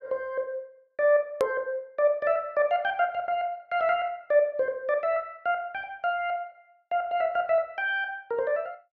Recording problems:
hard cut with a click; at 1.5 s

